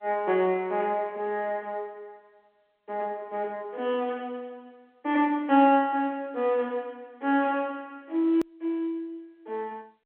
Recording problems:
phone line; 240 Hz to 3.6 kHz, G.711
edit click; at 8.5 s

